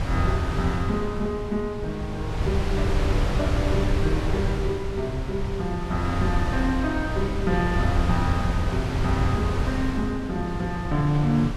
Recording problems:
wind on the microphone; below 140 Hz, SNR 1 dB

